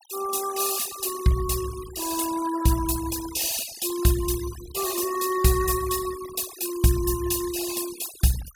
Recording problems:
noise reduction artefacts; signal-to-artefact ratio 14 dB

